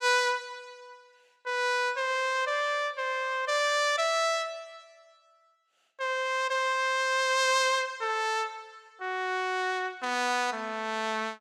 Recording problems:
none

